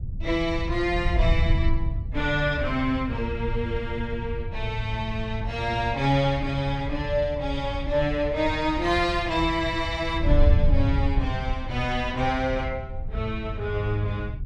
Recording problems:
wind noise; below 86 Hz, SNR 4 dB

